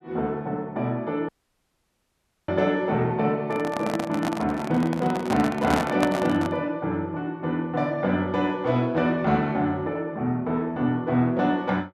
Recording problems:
audio cutting out; at 1.5 s for 1 s
microphone handling noise; from 3.5 to 6.5 s; peak +4 dB vs average level

